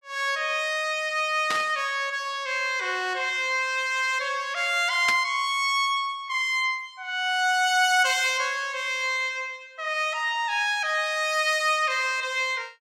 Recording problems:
burst of static; at 1.5 s and at 5 s; peak +1 dB vs average level

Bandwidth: 17.5 kHz